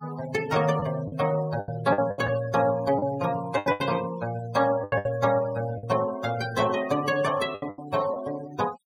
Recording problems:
noise reduction artefacts; signal-to-artefact ratio 16 dB
packet loss; 9% of the sound replaced, filled with the last packet

